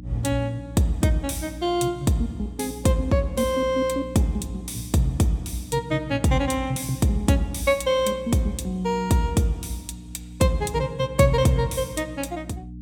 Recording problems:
hum; 60 Hz, harmonics up to 300 Hz, SNR 16 dB

